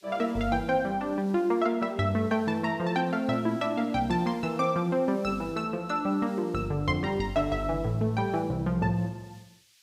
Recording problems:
hiss; SNR 29 dB

